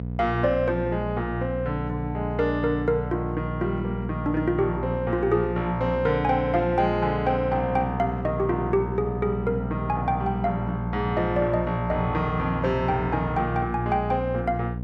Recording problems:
electrical hum; 60 Hz, harmonics up to 720 Hz, SNR 6 dB

